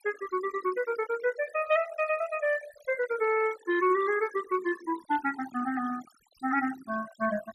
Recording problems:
denoising artefacts; signal-to-artefact ratio 15 dB

